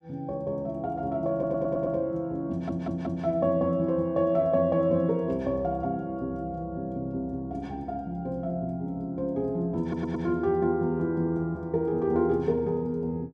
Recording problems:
stutter; at 1.5 s, at 2.5 s and at 10 s

